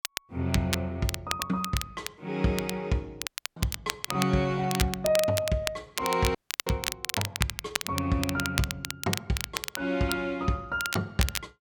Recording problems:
crackling; vinyl, SNR 4 dB
dropout; at 3.5 s and at 6.5 s

